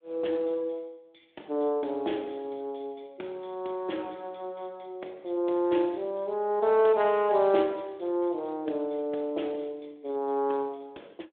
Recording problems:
phone line; 240 Hz to 3.5 kHz, Speex

